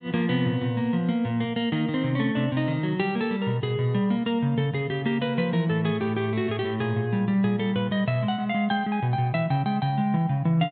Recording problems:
treble cut off; nothing above 4 kHz

